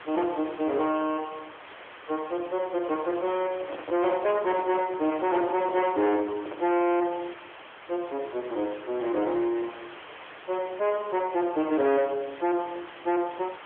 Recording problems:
phone line; 260 Hz to 3.5 kHz, AMR-NB
distorted audio; soft clipping, signal-to-distortion ratio 8 dB
background hiss; SNR 17 dB
handling noise; from 3.5 to 7 s; peak -4 dB vs average level

